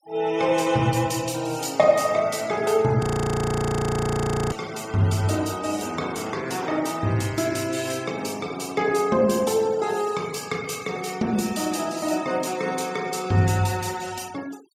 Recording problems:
denoising artefacts; signal-to-artefact ratio 20 dB
audio freezing; at 3 s for 1.5 s

